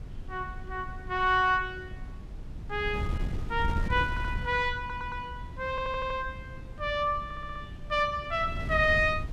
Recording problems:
wind noise; below 120 Hz, SNR 9 dB
stutter; 4 times, first at 4 s

